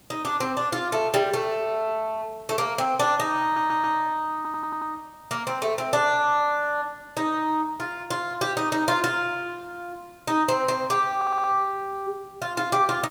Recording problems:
background hiss; slope -3 dB per octave, SNR 29 dB
stutter; at 3.5 s, at 4.5 s and at 11 s

